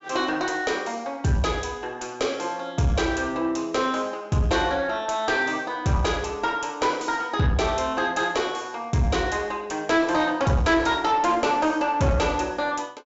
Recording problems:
low-pass filter; nothing above 8 kHz
distorted audio; soft clipping, signal-to-distortion ratio 10 dB

